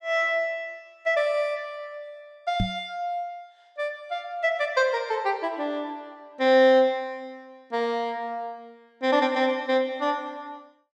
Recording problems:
knock on the microphone; at 2.5 s; peak +2 dB vs average level

